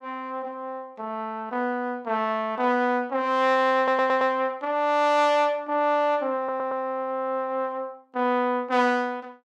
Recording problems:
audio stuttering; at 4 s and at 6.5 s

